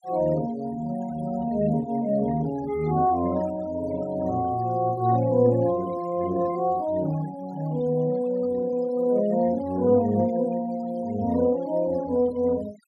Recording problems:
denoising artefacts; signal-to-artefact ratio 22 dB

